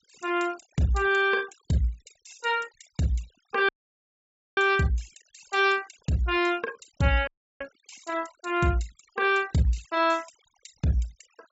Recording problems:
treble cut off; nothing above 8 kHz
denoising artefacts; signal-to-artefact ratio 22 dB
audio cutting out; at 3.5 s for 1 s and at 7.5 s

